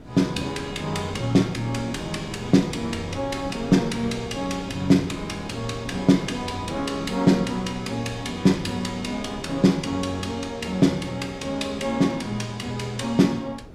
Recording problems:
wind on the microphone; below 380 Hz, SNR 16 dB

